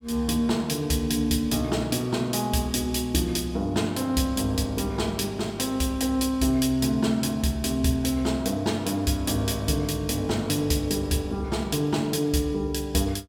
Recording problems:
none

